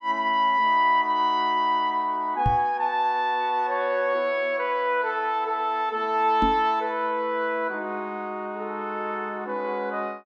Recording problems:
microphone bump; at 2.5 s and at 6.5 s; peak +2 dB vs average level

